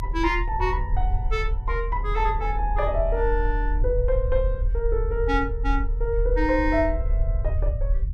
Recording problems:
low-frequency rumble; below 54 Hz, strongest tone 40 Hz, SNR 1 dB

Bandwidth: 15 kHz